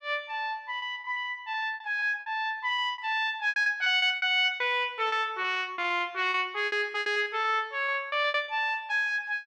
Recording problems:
lost packets; 15% of the sound replaced, filled with repeated pitch periods

